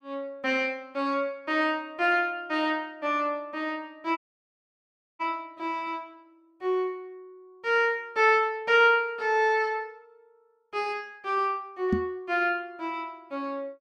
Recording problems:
audio cutting out; at 4 s for 1 s
microphone bump; at 12 s; peak +5 dB vs average level

